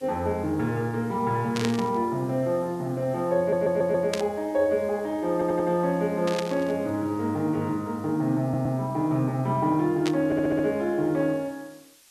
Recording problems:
hiss; slope +2 dB per octave, SNR 28 dB
static burst; 4 times, first at 1.5 s; peak -1 dB vs average level
audio stuttering; 4 times, first at 3.5 s

